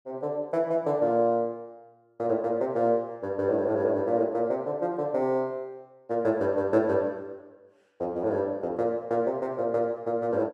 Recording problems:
none

